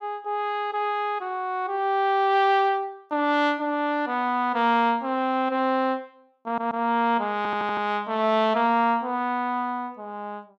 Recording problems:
stutter; at 6.5 s and at 7.5 s

